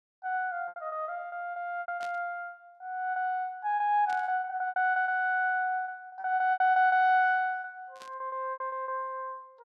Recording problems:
packet loss; 15% of the sound replaced, filled with repeated pitch periods
static burst; at 2 s, at 4 s and at 8 s; peak -13 dB vs average level

